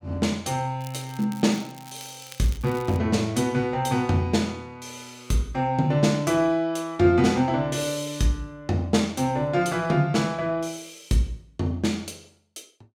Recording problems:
crackle; from 1 to 3 s; loose cable, SNR 21 dB

